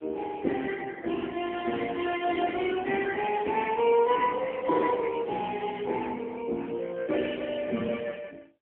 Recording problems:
telephone audio; 280 Hz to 2.9 kHz, AMR-NB

